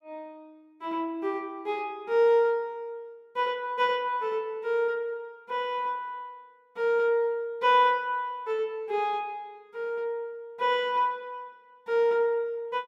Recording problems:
none

